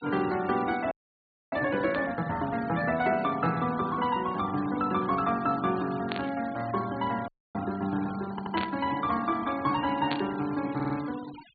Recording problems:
treble cut off; nothing above 4.5 kHz
denoising artefacts; signal-to-artefact ratio 17 dB
frozen audio; at 1 s for 0.5 s and at 7.5 s
burst of static; 4 times, first at 2 s; peak 0 dB vs average level
audio stuttering; at 8.5 s and at 11 s

